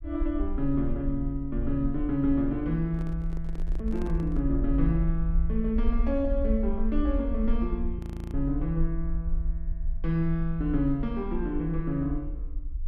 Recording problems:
low-frequency rumble; below 52 Hz, SNR 4 dB
handling noise; from 3 to 4.5 s; peak -6 dB vs average level
frozen audio; at 8 s

